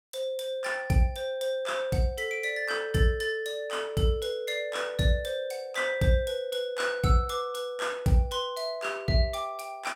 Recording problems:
none

